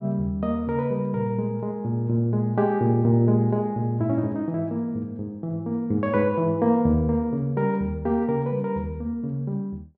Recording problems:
none

